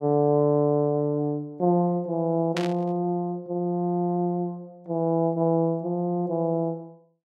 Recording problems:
static burst; at 2.5 s; peak -2 dB vs average level

